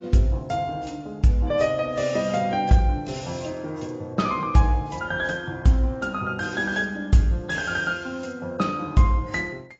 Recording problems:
lossy compression; AAC, log-spectral distance 2 dB, nothing above 7.3 kHz

